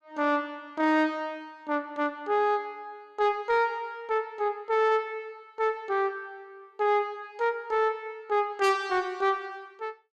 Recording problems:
distorted audio; soft clipping, signal-to-distortion ratio 11 dB

